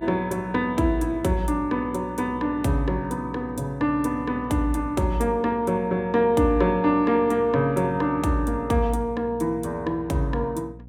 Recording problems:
hum; 60 Hz, harmonics up to 540 Hz, SNR 19 dB

